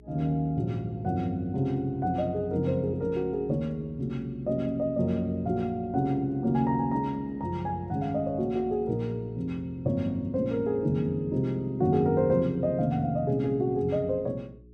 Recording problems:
hum; 60 Hz, harmonics up to 420 Hz, SNR 23 dB

